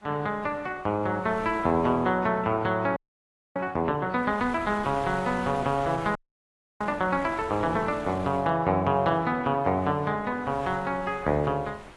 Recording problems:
codec artefacts; AAC, log-spectral distance 2 dB
wind noise; below 2.3 kHz, SNR 18 dB
audio freezing; at 3 s for 0.5 s and at 6 s for 0.5 s

